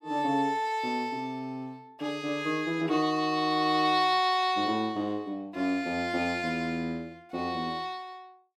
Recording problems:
none

